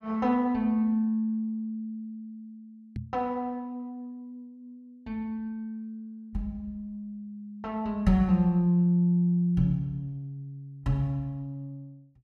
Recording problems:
microphone bump; at 3 s; peak -4 dB vs average level

